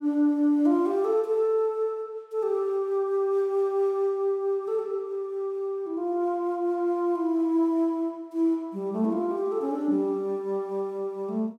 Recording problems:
none

